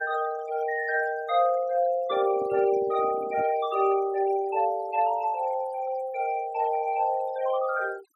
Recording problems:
denoising artefacts; signal-to-artefact ratio 19 dB
microphone handling noise; from 2 to 3.5 s; peak -12 dB vs average level

